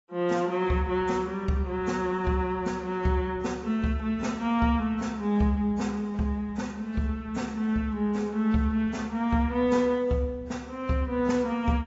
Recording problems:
codec artefacts; AAC, log-spectral distance 2 dB, nothing above 7.6 kHz

